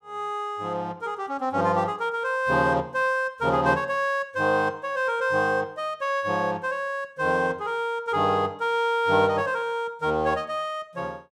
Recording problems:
none

